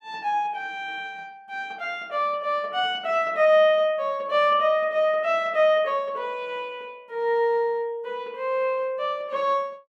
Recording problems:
none

